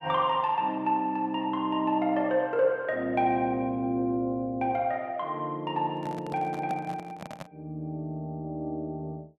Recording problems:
microphone handling noise; from 6 to 7.5 s; peak -6 dB vs average level

